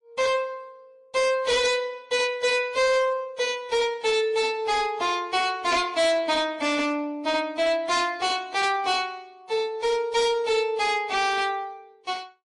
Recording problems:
lossy codec; AAC, then MP3, log-spectral distance 2 dB, nothing above 10.4 kHz
distortion; hard clipping, signal-to-distortion ratio 11 dB

